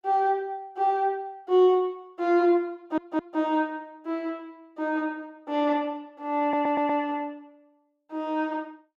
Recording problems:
stutter; at 3 s and at 6.5 s

